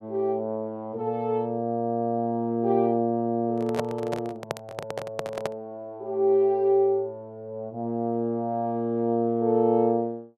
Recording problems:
handling noise; from 3.5 to 5.5 s; peak +1 dB vs average level

